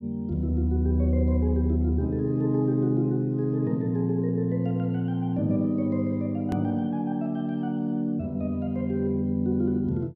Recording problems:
click at an edit; at 6.5 s

